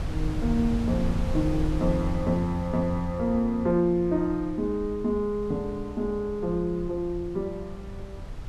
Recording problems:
wind noise; below 110 Hz, SNR 8 dB

